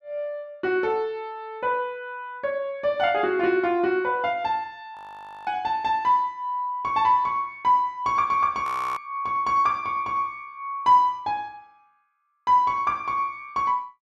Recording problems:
frozen audio; at 5 s for 0.5 s and at 8.5 s

